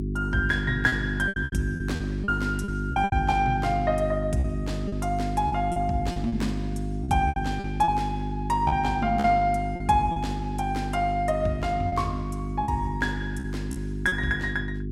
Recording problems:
hum; 50 Hz, harmonics up to 400 Hz, SNR 4 dB
packet loss; 9% of the sound replaced, filled with repeated pitch periods

